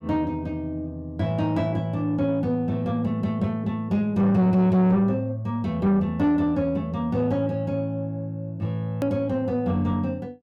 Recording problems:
distortion; soft clipping, signal-to-distortion ratio 10 dB
click at an edit; at 9 s

